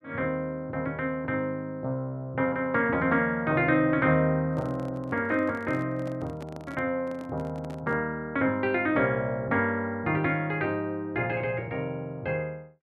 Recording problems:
handling noise; from 4.5 to 8 s; peak -10 dB vs average level

